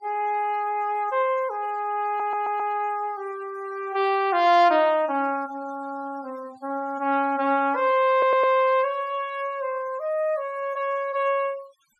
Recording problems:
noise reduction artefacts; signal-to-artefact ratio 24 dB
stutter; at 2 s and at 8 s

